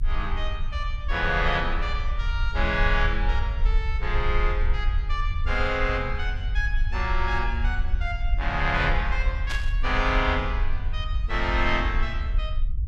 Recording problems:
low-frequency rumble; below 56 Hz, SNR 1 dB
static burst; at 9.5 s; peak -1 dB vs average level

